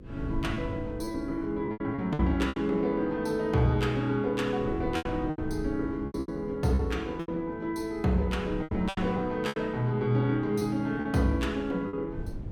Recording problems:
hum; 50 Hz, harmonics up to 500 Hz, SNR 20 dB
wind on the microphone; below 160 Hz, SNR 13 dB
lost packets; 9% of the sound replaced, filled with repeated pitch periods

